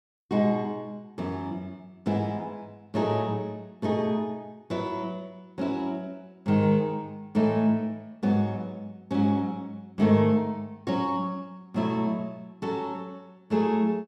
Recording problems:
none

